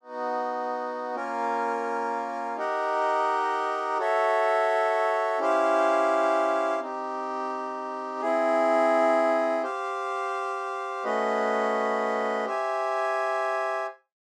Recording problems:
none

